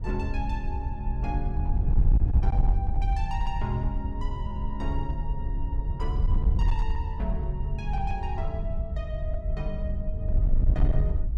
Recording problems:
distortion; hard clipping, signal-to-distortion ratio 10 dB
wind noise; below 68 Hz, SNR -7 dB

